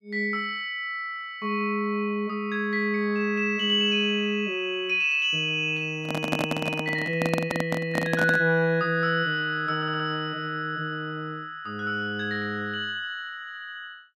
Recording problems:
microphone handling noise; from 6 to 8.5 s; peak +3 dB vs average level
audio stuttering; at 10 s

